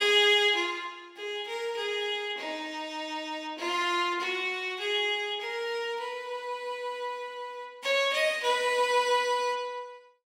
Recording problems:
none

